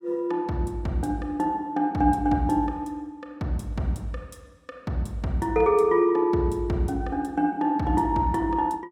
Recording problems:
none

